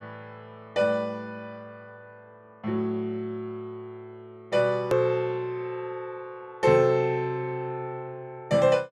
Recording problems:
click at an edit; at 5 s

